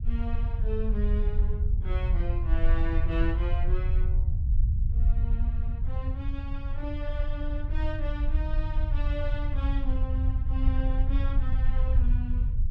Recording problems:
low-frequency rumble; below 68 Hz, SNR -9 dB

